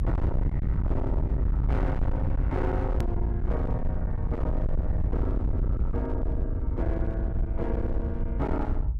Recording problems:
distorted audio; hard clipping, uneven, signal-to-distortion ratio 6 dB
low-frequency rumble; below 90 Hz, SNR -4 dB
hard cut with a click; at 3 s

